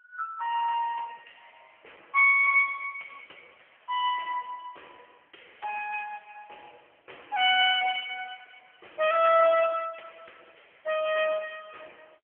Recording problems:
telephone audio; 390 Hz to 3.3 kHz, AMR-NB

